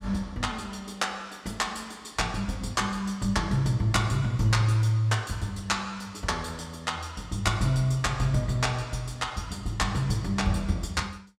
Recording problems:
none

